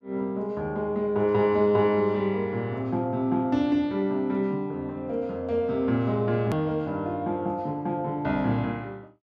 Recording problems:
edit click; at 6.5 s

